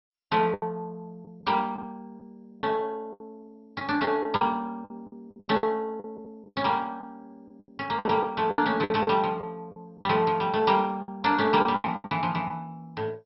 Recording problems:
codec artefacts; MP2, log-spectral distance 3 dB, nothing above 5.5 kHz
lost packets; 13% of the sound replaced, filled with the last packet

